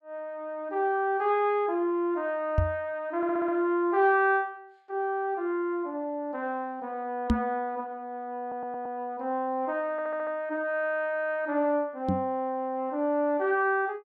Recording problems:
knock on the microphone; at 2.5 s, at 7.5 s and at 12 s; peak +7 dB vs average level
audio stuttering; at 3 s, at 8.5 s and at 10 s

